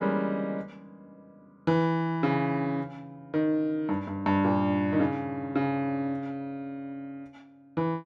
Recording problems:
none

